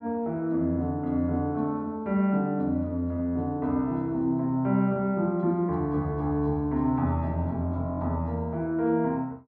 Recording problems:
none

